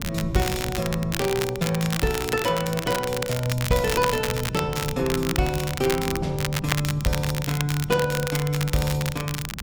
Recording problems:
wind noise; below 190 Hz, SNR 12 dB
crackling; vinyl, SNR 6 dB

